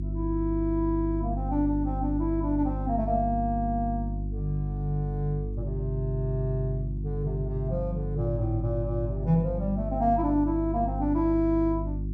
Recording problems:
hum; 50 Hz, harmonics up to 350 Hz, SNR 4 dB

